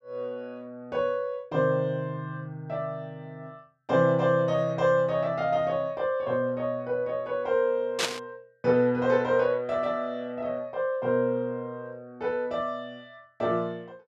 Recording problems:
burst of static; at 8 s; peak +5 dB vs average level

